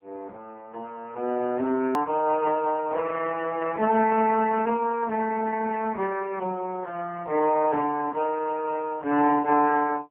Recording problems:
telephone audio; 220 Hz to 2.6 kHz, AMR-NB
click at an edit; at 2 s

